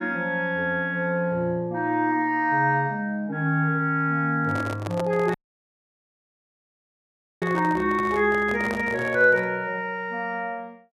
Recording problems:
handling noise; from 4.5 to 9.5 s; peak -4 dB vs average level
dropout; at 5.5 s for 2 s

